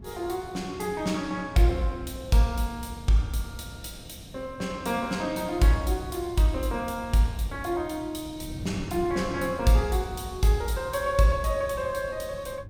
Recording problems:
wind on the microphone; below 190 Hz, SNR 17 dB

